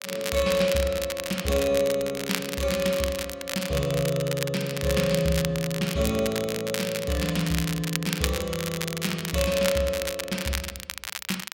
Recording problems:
crackle; vinyl, SNR 6 dB

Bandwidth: 16 kHz